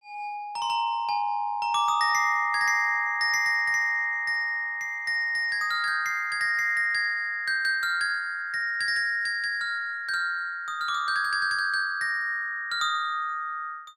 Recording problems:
none

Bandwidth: 14.5 kHz